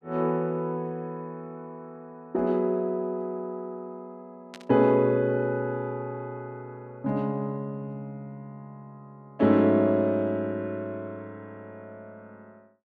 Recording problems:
static burst; at 4.5 s; peak -13 dB vs average level

